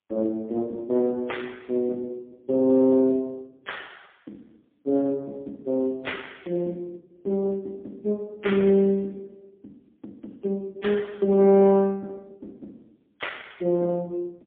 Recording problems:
telephone audio; 220 Hz to 3.6 kHz, AMR-NB, then MP3

